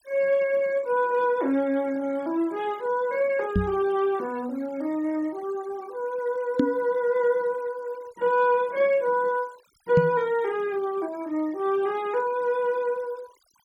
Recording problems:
denoising artefacts; signal-to-artefact ratio 25 dB
knock on the microphone; at 3.5 s, at 6.5 s and at 10 s; peak +7 dB vs average level

